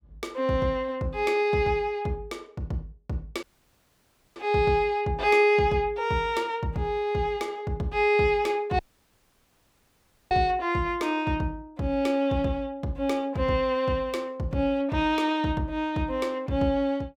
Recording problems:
audio cutting out; at 3.5 s for 1 s and at 9 s for 1.5 s

